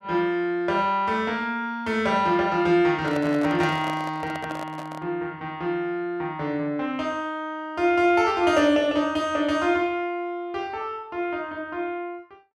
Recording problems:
microphone handling noise; from 3 to 5 s; peak -5 dB vs average level

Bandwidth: 13.5 kHz